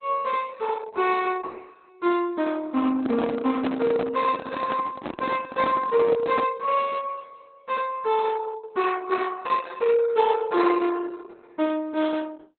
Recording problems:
lossy codec; Opus, log-spectral distance 4 dB, nothing above 4 kHz
microphone handling noise; from 3 to 6.5 s; peak 0 dB vs average level

